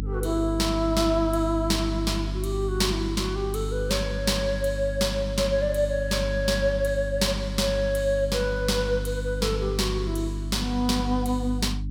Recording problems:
mains hum; 50 Hz, harmonics up to 300 Hz, SNR 6 dB

